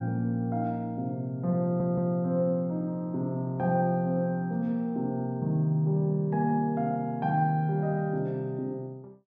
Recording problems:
audio stuttering; at 1.5 s

